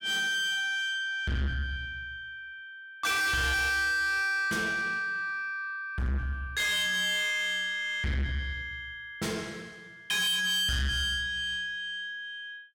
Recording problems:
distorted audio; soft clipping, signal-to-distortion ratio 6 dB

